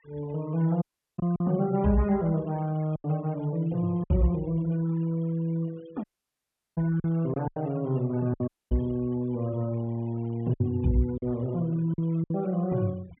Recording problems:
low-pass filter; nothing above 3.4 kHz
noise reduction artefacts; signal-to-artefact ratio 24 dB
lost packets; 5% of the sound replaced, filled with silence
audio cutting out; at 1 s, at 6 s for 0.5 s and at 8.5 s

